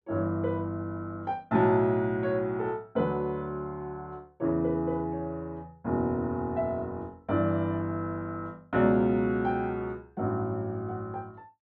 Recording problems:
none

